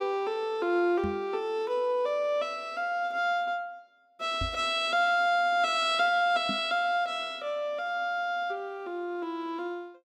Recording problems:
microphone thump; at 1 s, at 4.5 s and at 6.5 s; peak -2 dB vs average level

